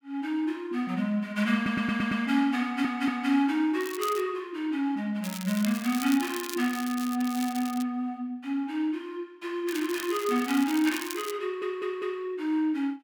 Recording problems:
audio stuttering; at 1.5 s, at 2.5 s and at 11 s
crackle; at 4 s, from 5 to 8 s and from 9.5 to 11 s; loose cable, SNR 11 dB

